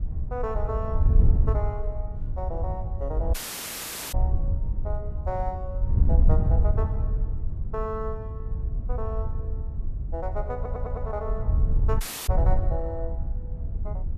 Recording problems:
wind noise; below 80 Hz, SNR -7 dB
dropout; at 3.5 s for 1 s and at 12 s
audio stuttering; at 11 s

